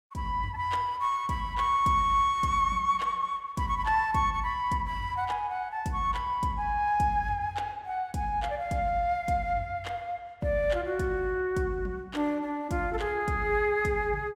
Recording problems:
none

